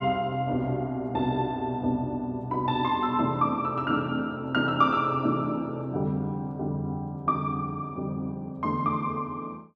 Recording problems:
none

